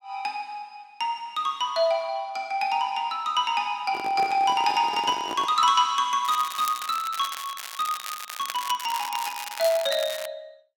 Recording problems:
microphone handling noise; from 4 to 5.5 s; peak -5 dB vs average level
crackling; from 6.5 to 10 s; loose cable, SNR 10 dB

